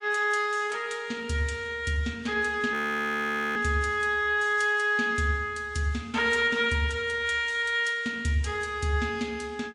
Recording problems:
codec artefacts; MP3, log-spectral distance 2 dB, nothing above 18.3 kHz
frozen audio; at 2.5 s for 1 s

